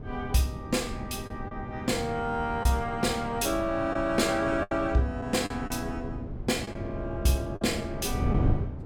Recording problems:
wind on the microphone; below 170 Hz, SNR 7 dB
packet loss; 4% of the sound replaced, filled with the last packet

